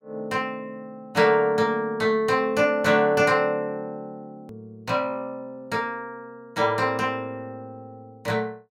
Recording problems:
click at an edit; at 4.5 s

